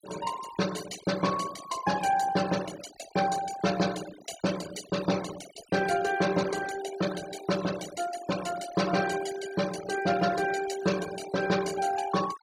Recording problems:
noise reduction artefacts; signal-to-artefact ratio 12 dB

